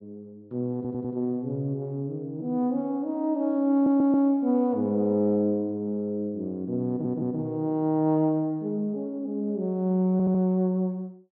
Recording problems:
treble missing; nothing above 5.5 kHz
audio stuttering; 4 times, first at 1 s

